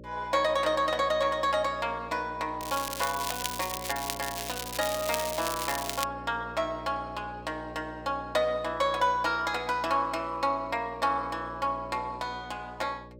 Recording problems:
hum; 60 Hz, harmonics up to 600 Hz, SNR 16 dB
crackling; from 2.5 to 6 s; loose cable, SNR 5 dB

